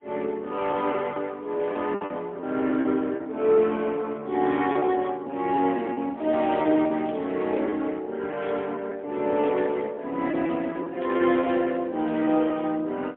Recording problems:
phone line; 240 Hz to 3.5 kHz, AMR-NB, then MP3
packet loss; 9% of the sound replaced, filled with repeated pitch periods
static burst; 4 times, first at 5.5 s; peak -12 dB vs average level

